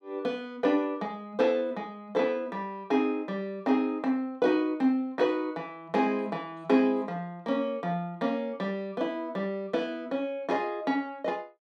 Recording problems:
none

